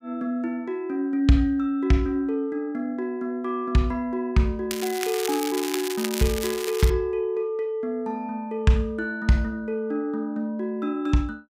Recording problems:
crackling; from 4.5 to 7 s; loose cable, SNR 7 dB

